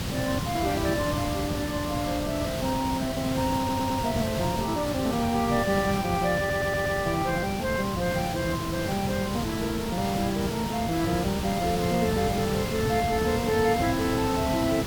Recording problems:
background hiss; slope -3 dB per octave, SNR 4 dB
stutter; at 3.5 s and at 6.5 s

